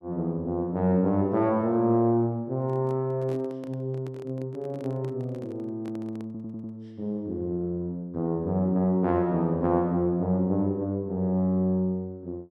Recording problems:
microphone handling noise; from 2.5 to 7 s; peak -11 dB vs average level
audio stuttering; at 6.5 s

